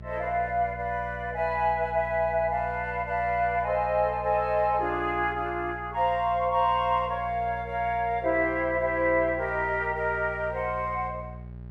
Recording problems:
electrical hum; 60 Hz, harmonics up to 600 Hz, SNR 15 dB

